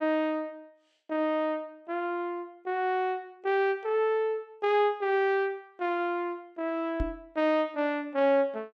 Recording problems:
microphone bump; at 7 s; peak 0 dB vs average level

